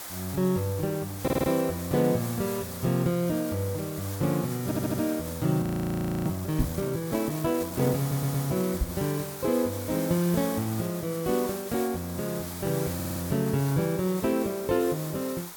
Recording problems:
hiss; SNR 10 dB
audio stuttering; 4 times, first at 1 s
frozen audio; at 5.5 s for 0.5 s
knock on the microphone; at 6.5 s and at 9 s; peak +5 dB vs average level

